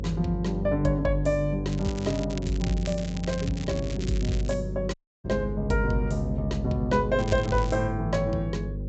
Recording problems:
treble missing; nothing above 7.8 kHz
hum; 50 Hz, harmonics up to 550 Hz, SNR 6 dB
crackle; from 1.5 to 4.5 s and at 7 s; loose cable, SNR 15 dB
dropout; at 5 s

